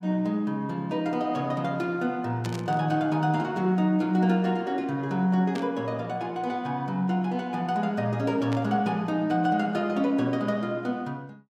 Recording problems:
burst of static; at 2.5 s, at 5.5 s and at 8.5 s; peak -8 dB vs average level

